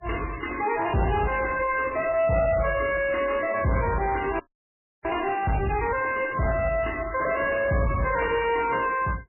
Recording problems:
lossy compression; MP3, log-spectral distance 7 dB, nothing above 2.8 kHz
distortion; soft clipping, signal-to-distortion ratio 7 dB
frozen audio; at 4.5 s for 0.5 s

